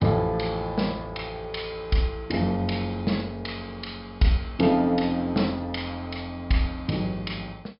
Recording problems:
treble missing; nothing above 5.5 kHz

